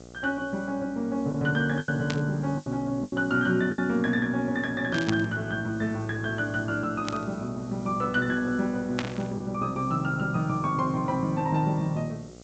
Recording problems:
treble cut off; nothing above 8 kHz
hum; 60 Hz, harmonics up to 1.4 kHz, SNR 19 dB
hiss; SNR 27 dB
lost packets; 3% of the sound replaced, filled with the last packet
static burst; 4 times, first at 2 s; peak +1 dB vs average level

